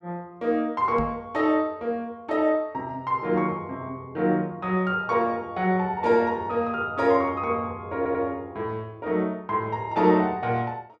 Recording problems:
microphone bump; at 1 s; peak -3 dB vs average level
audio stuttering; at 8 s

